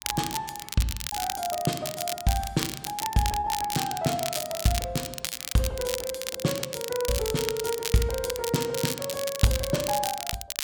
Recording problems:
crackling; vinyl, SNR 4 dB
lost packets; 1.9% of the sound replaced, filled with repeated pitch periods

